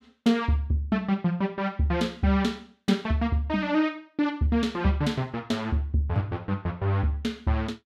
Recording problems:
none

